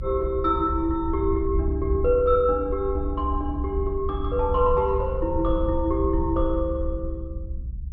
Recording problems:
treble missing; nothing above 5.5 kHz
rumble; below 70 Hz, SNR 6 dB

